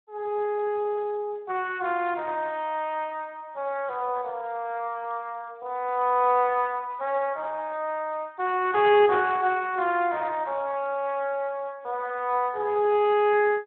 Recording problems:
telephone audio; 340 Hz to 3.3 kHz, Speex

